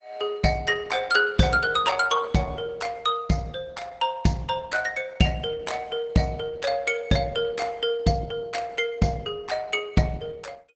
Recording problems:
lossy codec; Opus, log-spectral distance 3 dB, nothing above 7.8 kHz

